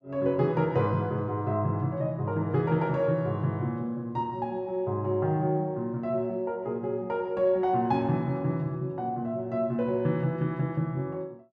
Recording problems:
none

